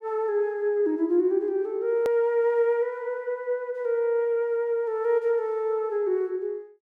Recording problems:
hard cut with a click; at 2 s

